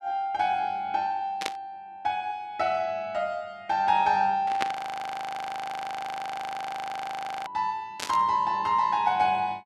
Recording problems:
burst of static; at 1.5 s, at 4.5 s and at 8 s; peak +3 dB vs average level
frozen audio; at 4.5 s for 2.5 s

